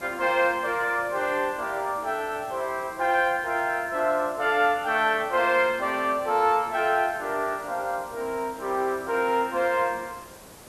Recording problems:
hiss; slope -5 dB per octave, SNR 21 dB

